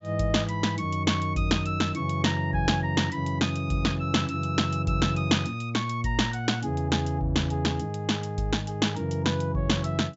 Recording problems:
low-pass filter; nothing above 8 kHz

